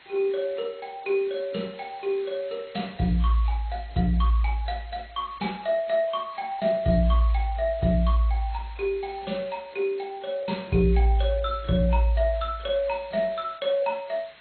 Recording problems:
lossy compression; AAC, then MP2, log-spectral distance 7 dB, nothing above 3.9 kHz
hiss; SNR 24 dB

